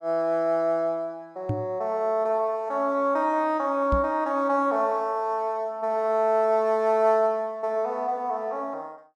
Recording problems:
microphone bump; at 1.5 s and at 4 s; peak +1 dB vs average level

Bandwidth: 13.5 kHz